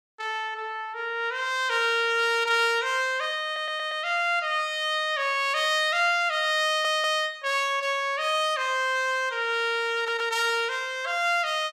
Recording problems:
audio stuttering; at 3.5 s, at 6.5 s and at 10 s

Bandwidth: 15 kHz